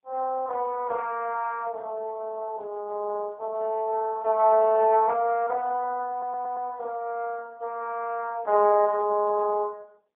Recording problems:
phone line; 280 Hz to 2.8 kHz, AMR-NB, then MP3
stutter; at 6 s

